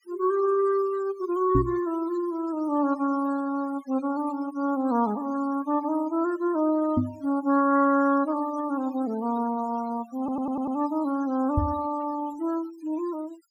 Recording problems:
denoising artefacts; signal-to-artefact ratio 20 dB
knock on the microphone; at 1.5 s, at 7 s and at 12 s; peak +5 dB vs average level
audio stuttering; at 10 s

